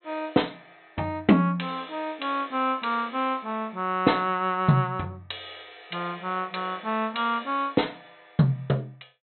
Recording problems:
treble missing; nothing above 4.1 kHz

